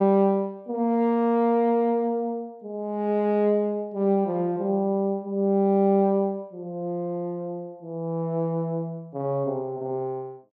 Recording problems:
none

